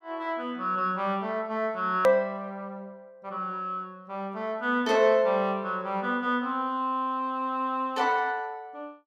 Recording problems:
edit click; at 2 s

